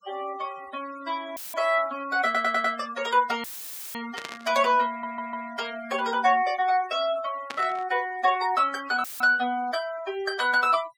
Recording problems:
denoising artefacts; signal-to-artefact ratio 19 dB
audio cutting out; at 1.5 s, at 3.5 s for 0.5 s and at 9 s; filled with static
stutter; at 2.5 s and at 5 s
static burst; at 4 s and at 7.5 s; peak -5 dB vs average level

